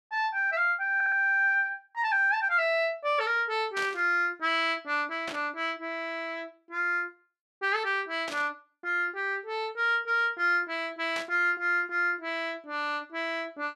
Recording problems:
audio stuttering; at 1 s
burst of static; 4 times, first at 4 s; peak -5 dB vs average level

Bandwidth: 12.5 kHz